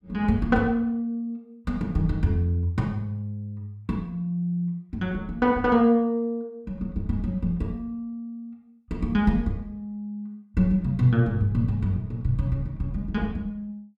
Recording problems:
none

